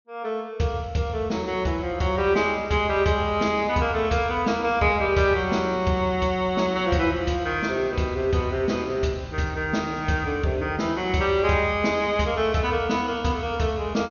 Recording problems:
treble cut off; nothing above 6.6 kHz

